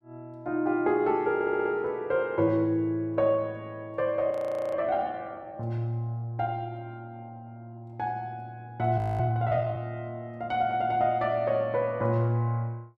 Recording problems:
audio stuttering; at 1.5 s
frozen audio; at 4.5 s and at 9 s

